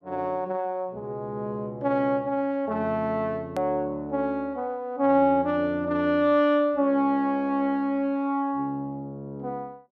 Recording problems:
hard cut with a click; at 3.5 s

